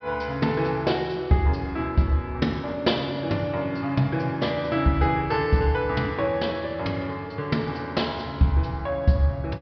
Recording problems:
low-pass filter; nothing above 5.5 kHz

